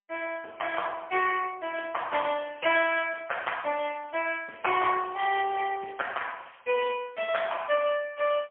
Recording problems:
telephone audio; 320 Hz to 3.2 kHz, AMR-NB, then MP3
crackling; from 1.5 to 6 s and at 6.5 s; loose cable, SNR 27 dB

